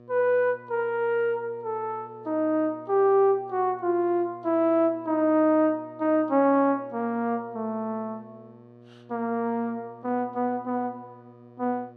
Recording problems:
hum; 60 Hz, harmonics up to 1.3 kHz, SNR 24 dB

